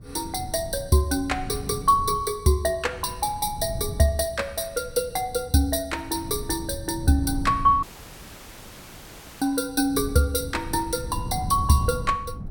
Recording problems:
wind on the microphone; below 150 Hz, SNR 12 dB
audio cutting out; at 8 s for 1.5 s

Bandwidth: 17 kHz